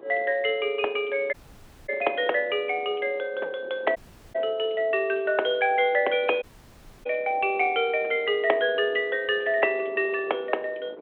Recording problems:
telephone audio; 340 Hz to 3.4 kHz, G.726
wind noise; below 620 Hz, SNR 21 dB
dropout; at 1.5 s for 0.5 s, at 4 s and at 6.5 s for 0.5 s

